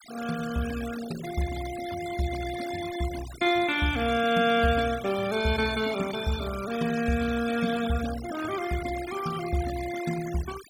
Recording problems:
denoising artefacts; signal-to-artefact ratio 13 dB

